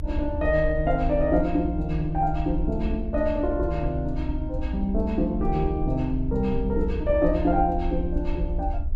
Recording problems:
rumble; below 70 Hz, SNR 5 dB

